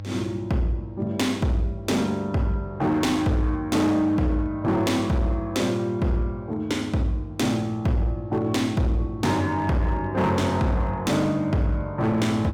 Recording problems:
distorted audio; hard clipping, uneven, signal-to-distortion ratio 11 dB
hum; 50 Hz, harmonics up to 600 Hz, SNR 14 dB

